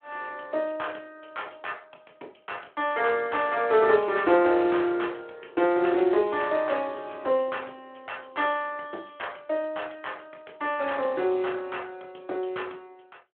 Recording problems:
phone line; 280 Hz to 3.4 kHz, Speex

